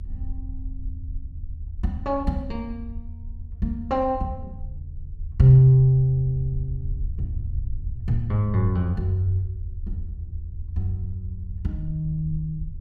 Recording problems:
low-frequency rumble; below 80 Hz, SNR 12 dB

